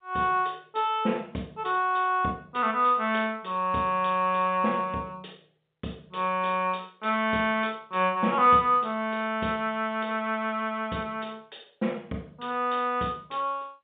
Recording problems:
telephone audio; 130 Hz to 3.7 kHz, G.711

